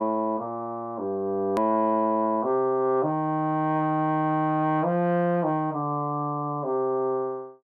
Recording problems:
click at an edit; at 1.5 s

